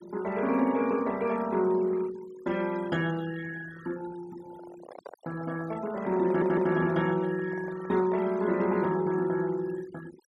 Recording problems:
noise reduction artefacts; signal-to-artefact ratio 19 dB
microphone handling noise; from 4.5 to 8.5 s; peak -10 dB vs average level
stutter; at 6.5 s

